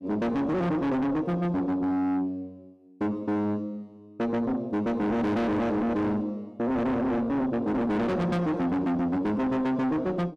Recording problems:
distortion; soft clipping, signal-to-distortion ratio 6 dB

